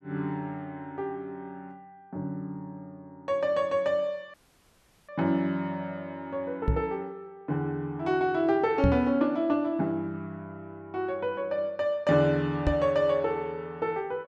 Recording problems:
dropout; at 4.5 s for 0.5 s
knock on the microphone; at 6.5 s, at 9 s and at 13 s; peak +7 dB vs average level

